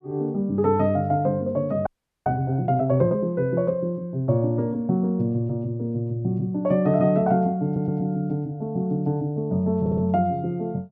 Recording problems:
audio freezing; at 2 s
stutter; at 7.5 s and at 10 s

